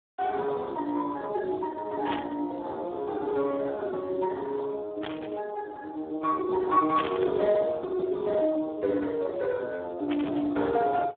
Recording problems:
telephone audio; 260 Hz to 2.2 kHz, Speex
static burst; 4 times, first at 2 s; peak +1 dB vs average level

